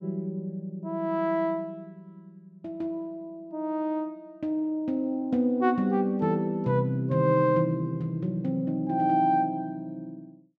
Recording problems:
none

